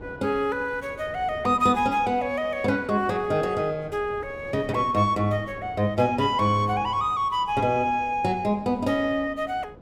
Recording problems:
wind on the microphone; below 490 Hz, SNR 20 dB

